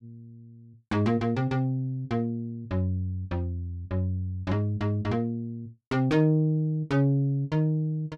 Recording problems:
none

